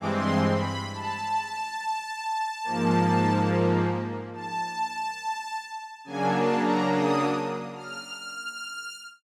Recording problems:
none

